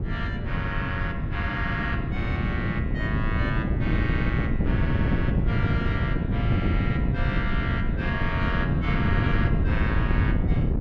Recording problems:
wind on the microphone; below 190 Hz, SNR -6 dB

